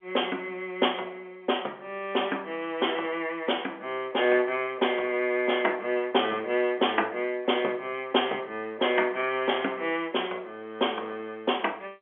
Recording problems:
phone line; 300 Hz to 3.4 kHz, G.711

